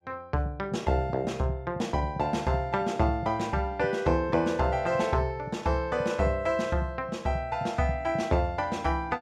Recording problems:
none

